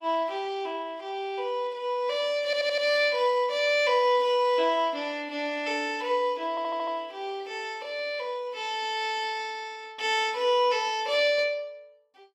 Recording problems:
lossy compression; Opus, log-spectral distance 2 dB
audio stuttering; at 2.5 s and at 6.5 s

